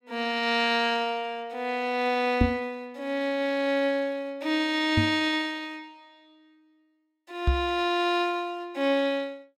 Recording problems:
microphone thump; at 2.5 s, at 5 s and at 7.5 s; peak +7 dB vs average level

